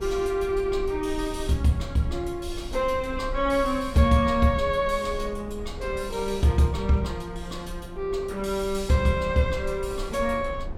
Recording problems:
low-frequency rumble; below 64 Hz, SNR 14 dB
wind on the microphone; below 700 Hz, SNR 25 dB

